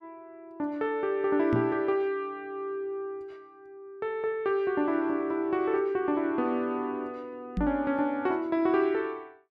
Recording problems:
microphone thump; at 1.5 s and at 7.5 s; peak +3 dB vs average level

